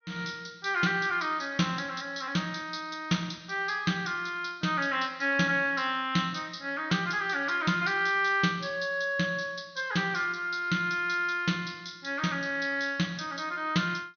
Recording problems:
low-pass filter; nothing above 6.4 kHz

